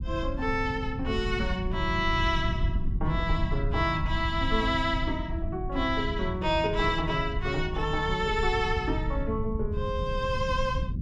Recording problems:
low-frequency rumble; below 100 Hz, SNR 4 dB

